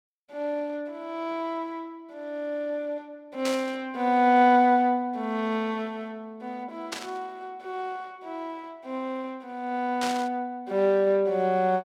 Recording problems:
burst of static; at 3.5 s, at 7 s and at 10 s; peak -2 dB vs average level

